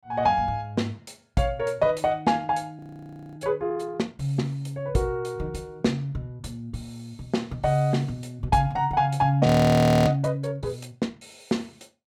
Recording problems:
audio freezing; at 3 s for 0.5 s and at 9.5 s for 0.5 s

